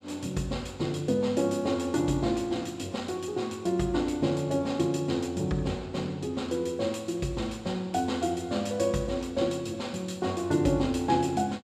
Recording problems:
none

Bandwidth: 14.5 kHz